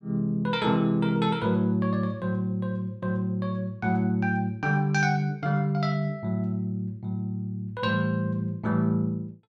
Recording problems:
none

